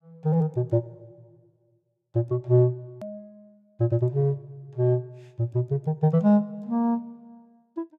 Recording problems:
click at an edit; at 3 s

